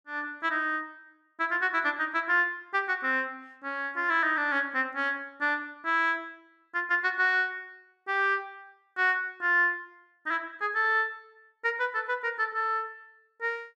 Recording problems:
none

